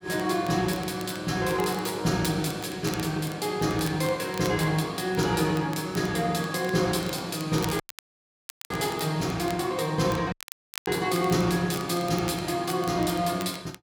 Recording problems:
crackling; vinyl, SNR 17 dB
audio cutting out; at 8 s for 1 s and at 10 s for 0.5 s

